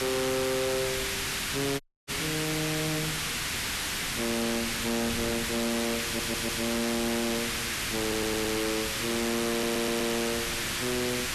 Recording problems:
distortion; soft clipping, signal-to-distortion ratio 4 dB
hiss; slope -1 dB per octave, SNR 0 dB
wind noise; below 410 Hz, SNR 14 dB
dropout; at 2 s
audio stuttering; at 6 s, at 8 s and at 9.5 s

